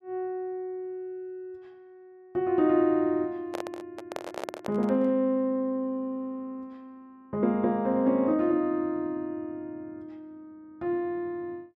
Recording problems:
microphone handling noise; from 3.5 to 5 s; peak -3 dB vs average level

